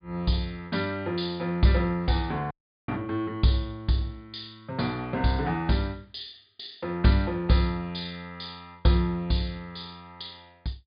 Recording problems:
treble cut off; nothing above 4.9 kHz
audio cutting out; at 2.5 s

